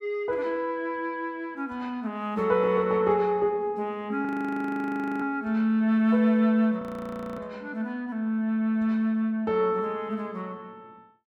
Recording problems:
audio freezing; at 4.5 s for 1 s and at 7 s for 0.5 s

